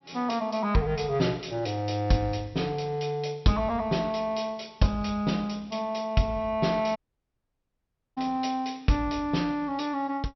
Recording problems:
treble cut off; nothing above 5.7 kHz
dropout; at 7 s for 1 s

